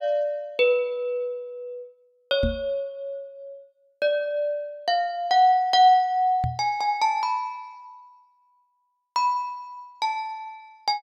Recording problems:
knock on the microphone; at 2.5 s and at 6.5 s; peak 0 dB vs average level

